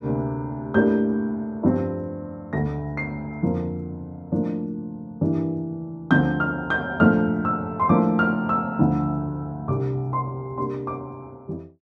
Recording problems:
none

